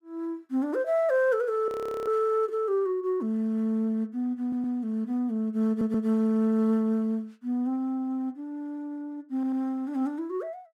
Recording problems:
frozen audio; at 1.5 s
audio stuttering; at 4.5 s, at 5.5 s and at 9.5 s

